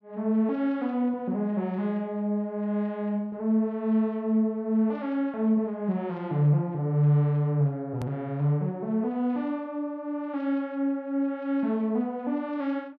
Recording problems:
click at an edit; at 8 s

